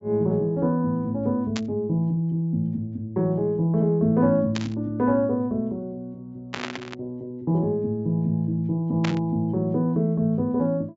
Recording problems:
treble missing; nothing above 8 kHz
static burst; 4 times, first at 1.5 s; peak -2 dB vs average level

